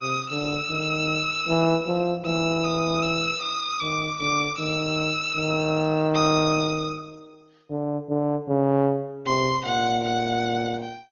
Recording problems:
lossy compression; Opus, then MP2, log-spectral distance 4 dB, nothing above 6.7 kHz

